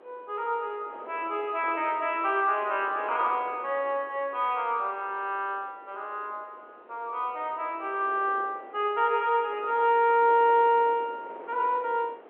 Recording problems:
phone line; 340 Hz to 4 kHz, G.711
wind on the microphone; below 840 Hz, SNR 20 dB

